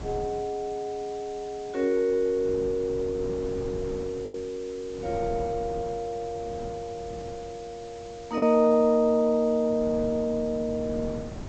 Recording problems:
low-pass filter; nothing above 8 kHz
lossy compression; MP2, log-spectral distance 6 dB
background hiss; slope -1 dB per octave, SNR 23 dB
wind noise; below 360 Hz, SNR 15 dB
packet loss; 1.1% of the sound replaced, filled with the last packet

